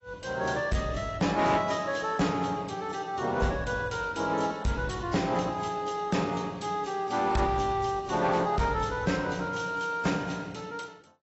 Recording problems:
lossy codec; AAC, log-spectral distance 4 dB, nothing above 7.8 kHz
distorted audio; hard clipping, signal-to-distortion ratio 12 dB

